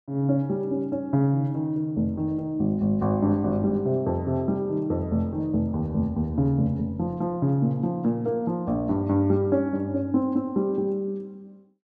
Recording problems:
none

